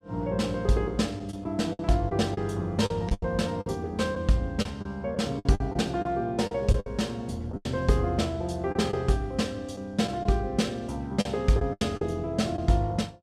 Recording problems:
packet loss; 8% of the sound replaced, filled with the last packet

